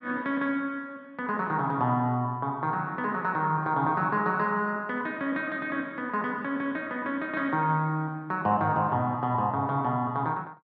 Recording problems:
none

